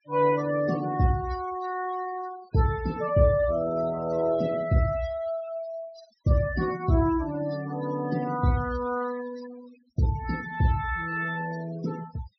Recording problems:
treble missing; nothing above 6.1 kHz
denoising artefacts; signal-to-artefact ratio 16 dB

